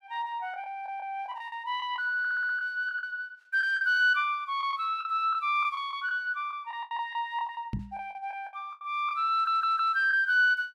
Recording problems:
lost packets; 11% of the sound replaced, filled with the last packet
audio stuttering; at 2 s and at 9.5 s
microphone thump; at 7.5 s; peak -1 dB vs average level

